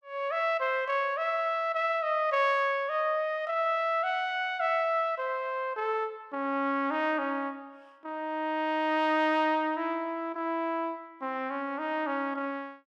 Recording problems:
none

